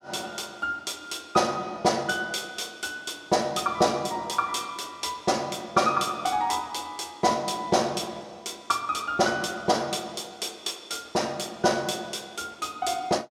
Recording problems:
none

